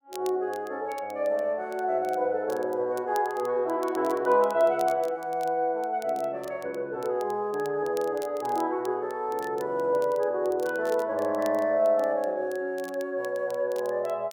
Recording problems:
crackle; vinyl, SNR 23 dB

